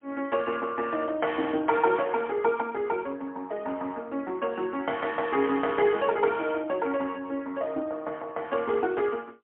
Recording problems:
telephone audio; 240 Hz to 3.3 kHz, AMR-NB, then MP3

